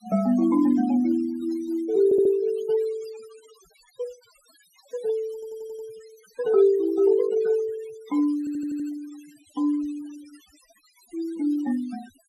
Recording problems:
denoising artefacts; signal-to-artefact ratio 24 dB
stutter; at 2 s, at 5.5 s and at 8.5 s

